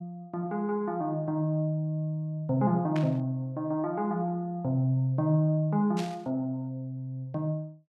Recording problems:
static burst; at 3 s and at 6 s; peak -6 dB vs average level

